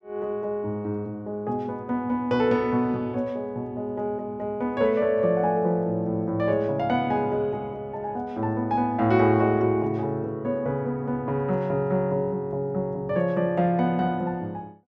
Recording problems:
none

